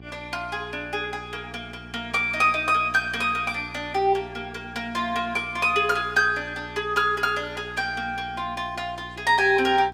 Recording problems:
hum; 60 Hz, harmonics up to 1.1 kHz, SNR 19 dB

